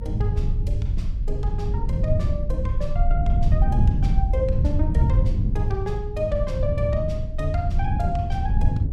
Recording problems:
rumble; below 52 Hz, strongest tone 28 Hz, SNR 1 dB
wind noise; below 120 Hz, SNR -3 dB

